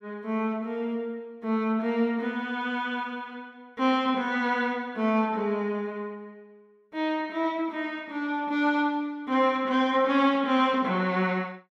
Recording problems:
none

